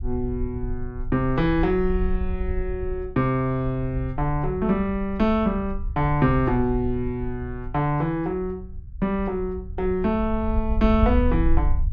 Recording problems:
low-frequency rumble; below 68 Hz, SNR 7 dB

